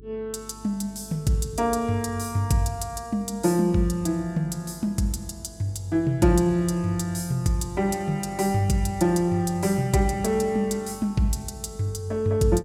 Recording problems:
electrical hum; 50 Hz, harmonics up to 450 Hz, SNR 24 dB

